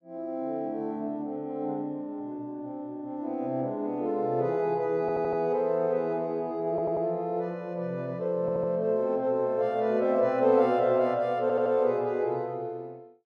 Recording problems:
audio stuttering; 4 times, first at 5 s

